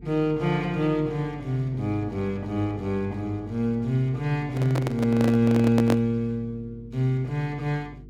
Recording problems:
hum; 50 Hz, harmonics up to 450 Hz, SNR 21 dB
handling noise; from 4.5 to 6 s; peak +2 dB vs average level

